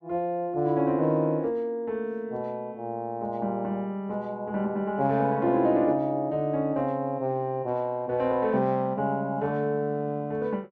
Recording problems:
none

